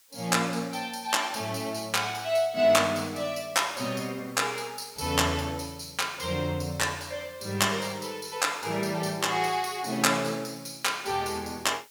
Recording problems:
hiss; slope +3 dB per octave, SNR 25 dB

